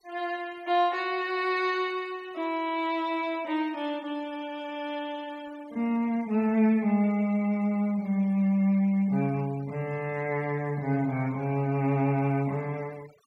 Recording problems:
denoising artefacts; signal-to-artefact ratio 25 dB

